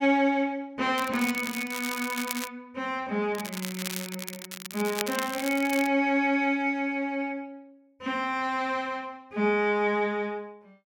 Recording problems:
crackling; from 1 to 2.5 s and from 3.5 to 6 s; loose cable, SNR 8 dB

